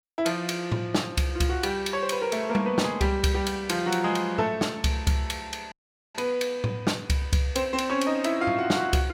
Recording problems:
audio cutting out; at 5.5 s

